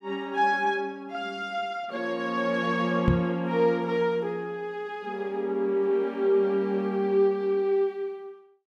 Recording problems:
microphone bump; at 3 s; peak +8 dB vs average level

